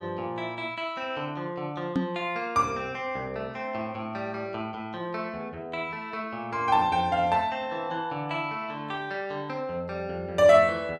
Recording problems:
microphone bump; at 2 s; peak +5 dB vs average level

